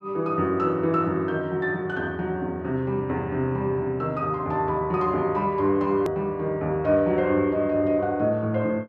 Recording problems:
click at an edit; at 6 s

